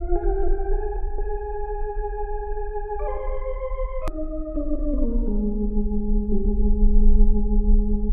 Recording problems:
low-pass filter; nothing above 4 kHz
rumble; below 38 Hz, strongest tone 26 Hz, SNR 0 dB
hard cut with a click; at 4 s

